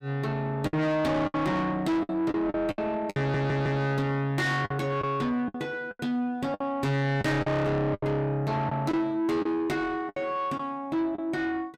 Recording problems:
distortion; soft clipping, signal-to-distortion ratio 6 dB
lost packets; 9% of the sound replaced, filled with the last packet
stutter; at 3 s

